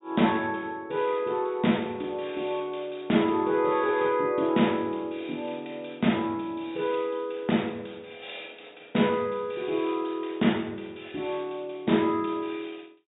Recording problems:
low-pass filter; nothing above 4 kHz

